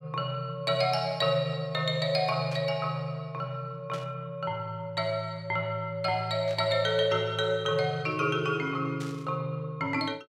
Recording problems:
static burst; 4 times, first at 2.5 s; peak -10 dB vs average level

